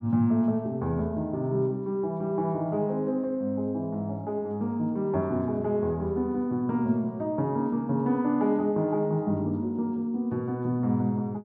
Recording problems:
none

